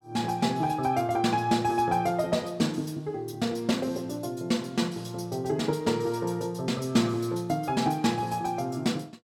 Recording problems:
none

